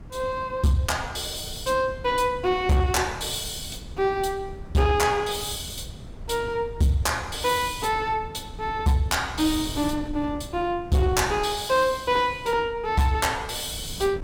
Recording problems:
distortion; soft clipping, signal-to-distortion ratio 12 dB
wind on the microphone; below 160 Hz, SNR 15 dB

